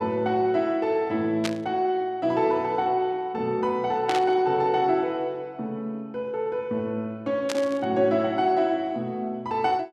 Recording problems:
static burst; at 1.5 s, at 4 s and at 7.5 s; peak 0 dB vs average level

